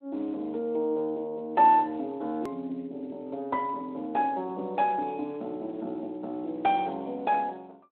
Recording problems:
telephone audio; 240 Hz to 3.4 kHz, Speex
click at an edit; at 2.5 s

